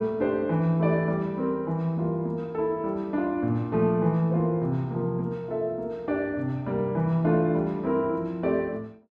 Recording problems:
none

